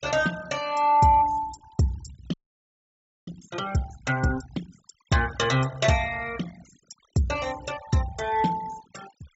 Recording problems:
treble cut off; nothing above 8 kHz
denoising artefacts; signal-to-artefact ratio 19 dB
frozen audio; at 2.5 s for 1 s

